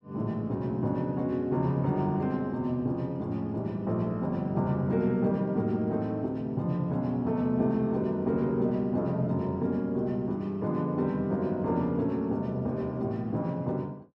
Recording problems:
none

